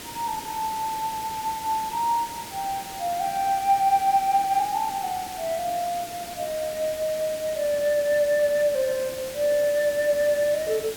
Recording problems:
background hiss; SNR 12 dB

